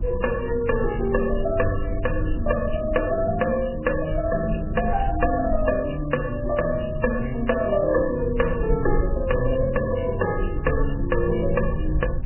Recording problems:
lossy codec; MP3, log-spectral distance 5 dB, nothing above 2.8 kHz
rumble; below 68 Hz, SNR 7 dB

